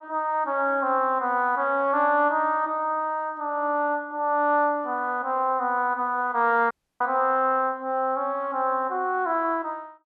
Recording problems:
dropout; at 6.5 s

